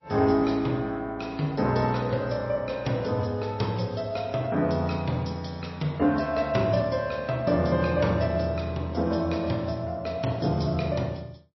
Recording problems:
codec artefacts; MP3, log-spectral distance 3 dB, nothing above 5.7 kHz

